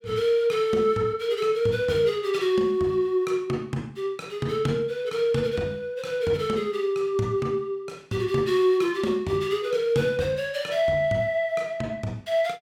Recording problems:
none

